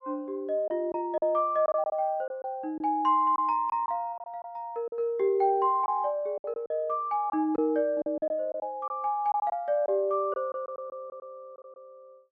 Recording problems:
lost packets; 8% of the sound replaced, filled with silence

